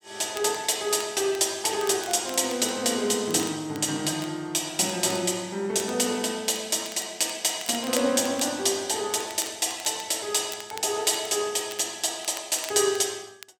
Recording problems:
crackle; vinyl, SNR 18 dB

